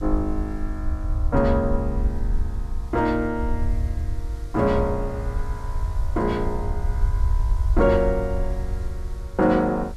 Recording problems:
background hiss; SNR 27 dB
low-frequency rumble; below 70 Hz, SNR 4 dB

